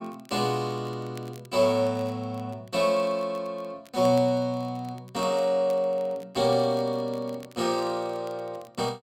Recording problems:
crackling; vinyl, SNR 27 dB

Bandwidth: 16 kHz